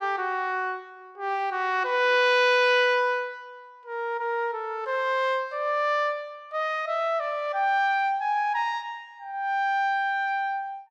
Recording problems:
none

